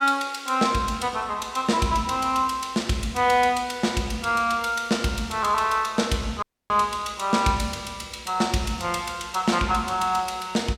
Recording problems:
audio cutting out; at 6.5 s

